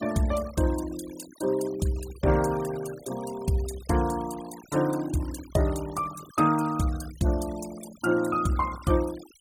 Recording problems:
noise reduction artefacts; signal-to-artefact ratio 17 dB

